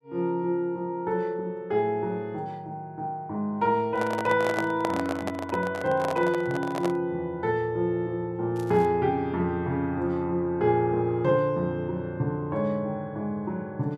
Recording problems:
handling noise; from 4 to 7 s; peak +1 dB vs average level
crackle; at 8.5 s; loose cable, SNR 27 dB

